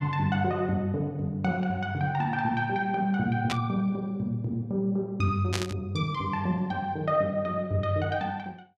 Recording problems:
static burst; at 3.5 s and at 5.5 s; peak +2 dB vs average level

